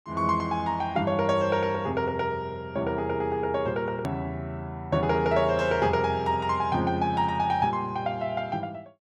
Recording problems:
click at an edit; at 4 s

